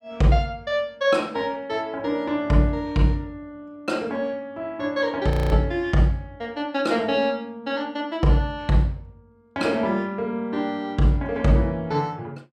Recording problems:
frozen audio; at 5.5 s

